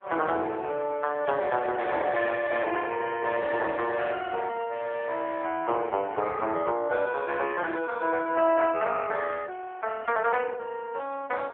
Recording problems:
phone line; 300 Hz to 3.5 kHz, AMR-NB

